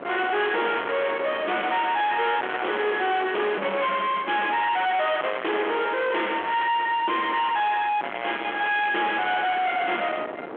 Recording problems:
phone line; 260 Hz to 3.5 kHz, G.726
distorted audio; soft clipping, signal-to-distortion ratio 5 dB
wind noise; below 2.2 kHz, SNR 12 dB

